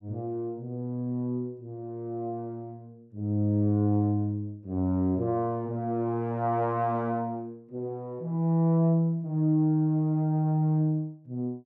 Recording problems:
none

